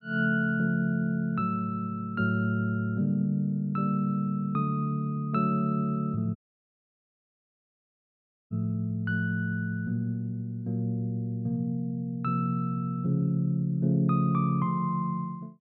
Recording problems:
audio cutting out; at 6.5 s for 2 s

